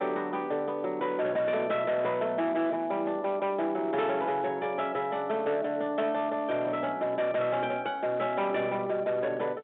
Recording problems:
phone line; 150 Hz to 4 kHz, G.711
distorted audio; hard clipping, signal-to-distortion ratio 12 dB

